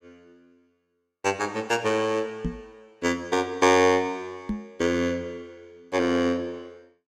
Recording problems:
knock on the microphone; at 2.5 s and at 4.5 s; peak -1 dB vs average level

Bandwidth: 17 kHz